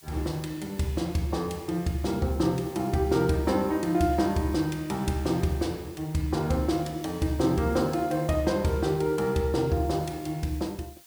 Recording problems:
background hiss; slope +2 dB per octave, SNR 22 dB

